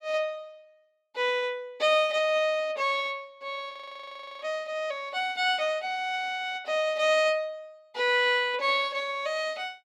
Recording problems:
audio freezing; at 3.5 s for 0.5 s

